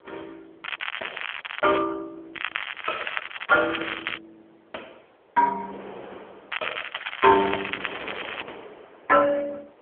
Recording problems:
phone line; 340 Hz to 3.3 kHz, AMR-NB
wind on the microphone; below 1 kHz, SNR 21 dB
crackling; from 0.5 to 2 s, from 2.5 to 4 s and from 6.5 to 8.5 s; loose cable, SNR 9 dB

